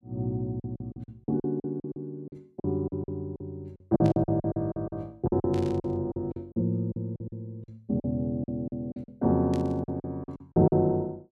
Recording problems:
lost packets; 16% of the sound replaced, filled with silence
burst of static; at 4 s, at 5.5 s and at 9.5 s; peak -11 dB vs average level

